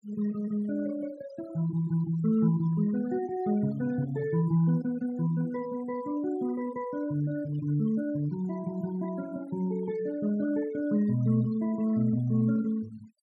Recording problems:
denoising artefacts; signal-to-artefact ratio 21 dB

